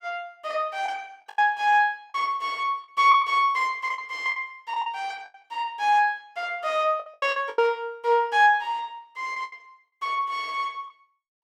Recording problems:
packet loss; 7% of the sound replaced, filled with the last packet

